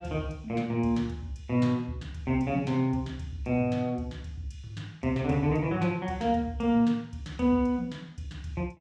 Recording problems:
none

